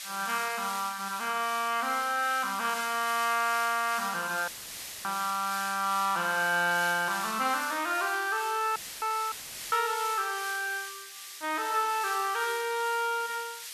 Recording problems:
hiss; SNR 10 dB
crackle; from 2.5 to 4.5 s and from 7.5 to 9 s; loose cable, SNR 30 dB
audio cutting out; at 4.5 s for 0.5 s, at 9 s and at 9.5 s; filled with static

